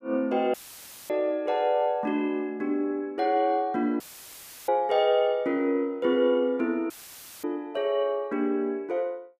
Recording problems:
audio cutting out; at 0.5 s for 0.5 s, at 4 s for 0.5 s and at 7 s for 0.5 s; filled with static

